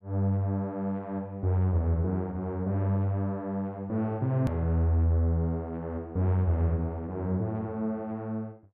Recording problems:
hard cut with a click; at 4.5 s

